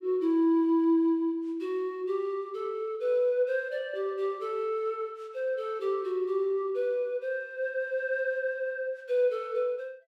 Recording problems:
none

